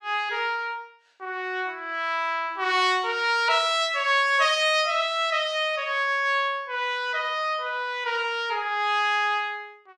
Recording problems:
none

